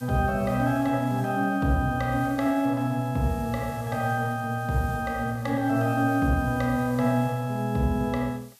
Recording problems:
background hiss; slope +3 dB per octave, SNR 23 dB

